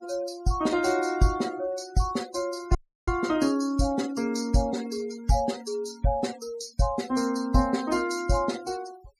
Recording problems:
noise reduction artefacts; signal-to-artefact ratio 17 dB
audio cutting out; at 3 s

